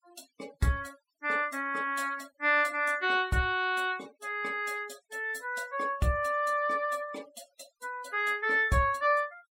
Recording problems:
noise reduction artefacts; signal-to-artefact ratio 24 dB

